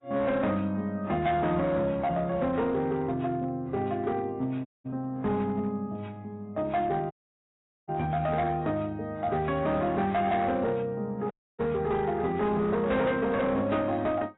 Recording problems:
codec artefacts; AAC, log-spectral distance 2 dB, nothing above 3.8 kHz
distortion; hard clipping, signal-to-distortion ratio 11 dB
audio cutting out; at 4.5 s, at 7 s for 1 s and at 11 s

